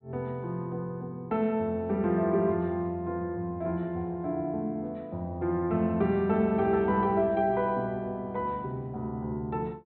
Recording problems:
treble cut off; nothing above 4.1 kHz

